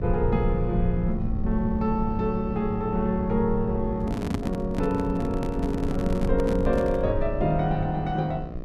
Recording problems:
hum; 60 Hz, harmonics up to 1.8 kHz, SNR 15 dB
rumble; below 100 Hz, SNR 6 dB
microphone handling noise; from 4 to 7 s; peak +2 dB vs average level

